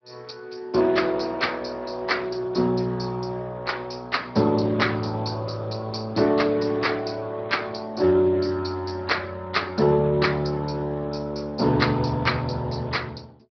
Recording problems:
treble missing; nothing above 5.5 kHz
lossy compression; Speex, log-spectral distance 6 dB

